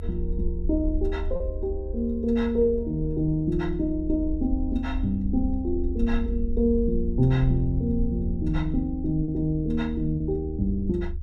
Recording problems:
rumble; below 72 Hz, SNR 6 dB
packet loss; 1.1% of the sound replaced, filled with repeated pitch periods

